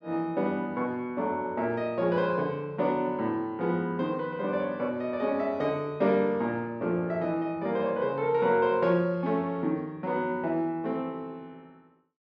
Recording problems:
none

